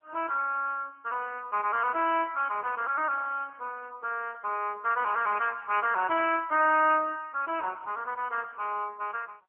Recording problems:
telephone audio; 280 Hz to 3.1 kHz, AMR-NB

